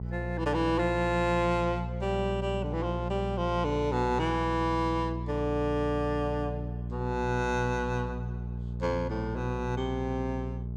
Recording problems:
hum; 60 Hz, harmonics up to 480 Hz, SNR 5 dB

